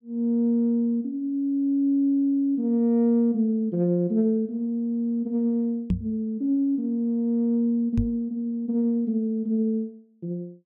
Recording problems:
microphone bump; at 6 s and at 8 s; peak +4 dB vs average level

